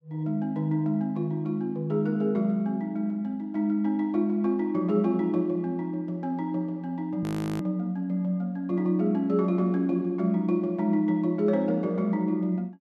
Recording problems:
frozen audio; at 7 s

